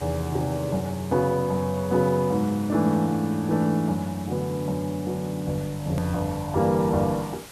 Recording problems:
background hiss; slope -2 dB per octave, SNR 19 dB
edit click; at 6 s

